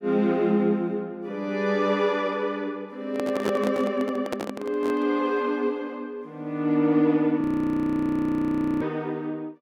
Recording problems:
microphone handling noise; from 3 to 5 s; peak +1 dB vs average level
audio freezing; at 7.5 s for 1.5 s

